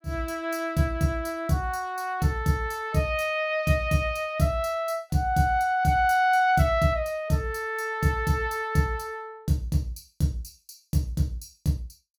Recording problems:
none

